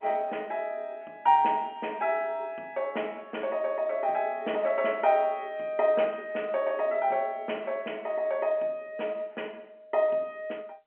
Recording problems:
phone line; 260 Hz to 3.2 kHz, G.711

